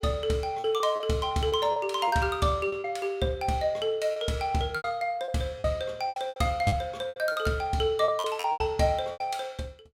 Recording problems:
lost packets; 12% of the sound replaced, filled with repeated pitch periods

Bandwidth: 16.5 kHz